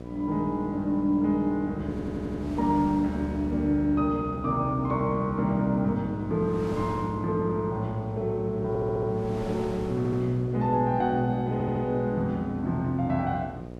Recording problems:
hum; 60 Hz, harmonics up to 840 Hz, SNR 13 dB
wind on the microphone; below 970 Hz, SNR 20 dB
stutter; 4 times, first at 2 s

